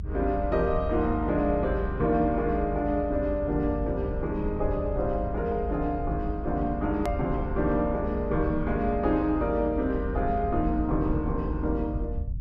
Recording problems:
treble cut off; nothing above 8 kHz
rumble; below 76 Hz, strongest tone 52 Hz, SNR 7 dB
click at an edit; at 7 s

